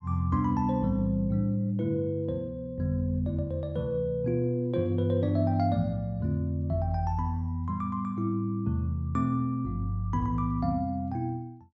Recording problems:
none

